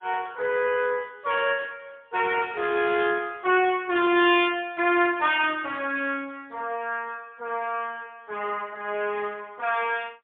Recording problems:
phone line; 300 Hz to 3.7 kHz, AMR-NB, then MP3

